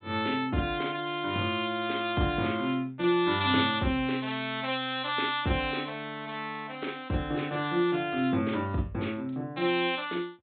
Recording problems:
low-pass filter; nothing above 4 kHz

